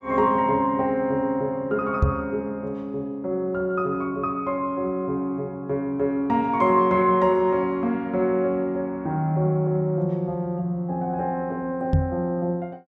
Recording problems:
knock on the microphone; at 2 s and at 12 s; peak +8 dB vs average level

